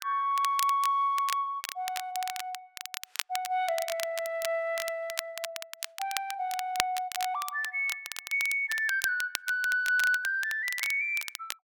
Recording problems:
crackling; vinyl, SNR 8 dB

